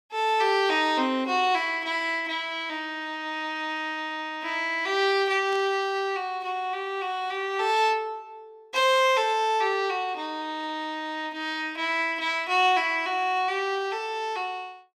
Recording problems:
static burst; at 5.5 s; peak -15 dB vs average level

